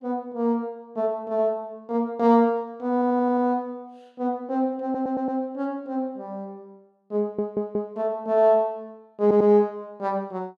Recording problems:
stutter; 4 times, first at 3 s

